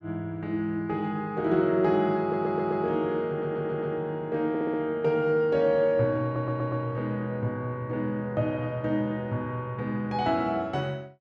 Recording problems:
audio stuttering; 4 times, first at 2 s

